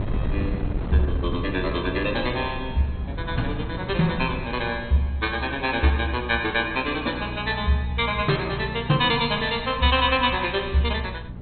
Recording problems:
codec artefacts; MP2, log-spectral distance 4 dB, nothing above 4 kHz
hum; 60 Hz, harmonics up to 480 Hz, SNR 13 dB
wind noise; below 150 Hz, SNR 11 dB

